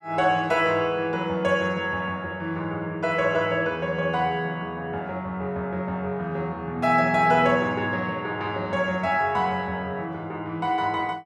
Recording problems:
none

